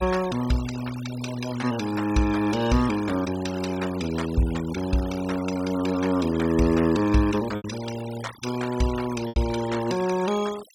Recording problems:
denoising artefacts; signal-to-artefact ratio 14 dB
lost packets; 1.5% of the sound replaced, filled with repeated pitch periods

